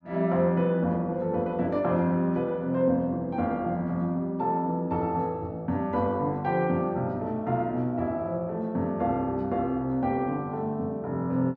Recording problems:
none

